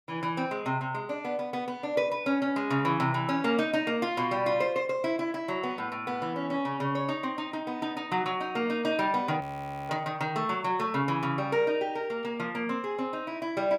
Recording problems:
frozen audio; at 9.5 s

